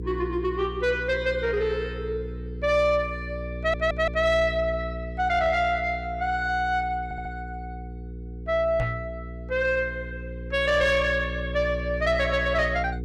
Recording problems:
distortion; soft clipping, signal-to-distortion ratio 11 dB
electrical hum; 60 Hz, harmonics up to 480 Hz, SNR 10 dB
audio stuttering; at 3.5 s and at 7 s
knock on the microphone; at 9 s; peak +1 dB vs average level

